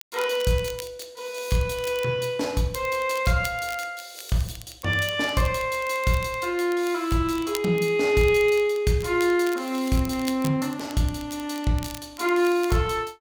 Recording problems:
crackle; vinyl, SNR 18 dB

